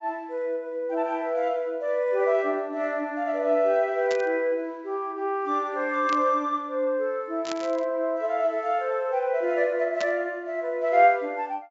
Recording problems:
treble missing; nothing above 8 kHz
burst of static; 4 times, first at 4 s; peak -5 dB vs average level

